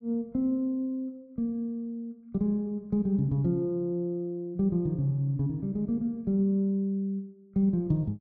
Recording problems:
none

